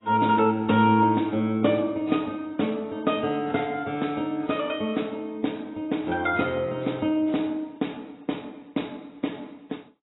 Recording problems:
lossy compression; AAC, log-spectral distance 3 dB, nothing above 3.8 kHz

